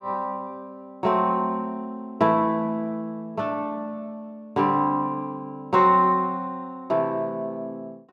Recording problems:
none

